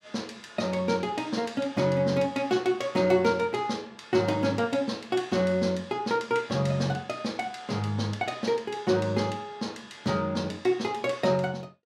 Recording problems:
none

